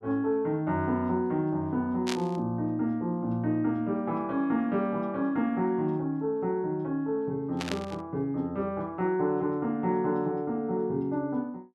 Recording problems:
static burst; at 2 s and at 7.5 s; peak -1 dB vs average level

